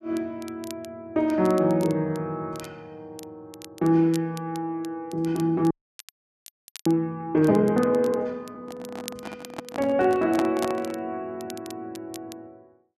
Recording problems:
crackle; vinyl, SNR 22 dB
frozen audio; at 5.5 s for 1 s
handling noise; from 8.5 to 11 s; peak +1 dB vs average level

